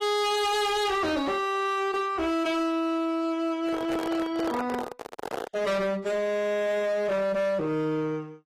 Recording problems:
lossy codec; AAC, log-spectral distance 2 dB, nothing above 15.1 kHz
distorted audio; hard clipping, signal-to-distortion ratio 8 dB
microphone handling noise; from 3.5 to 5.5 s; peak -3 dB vs average level

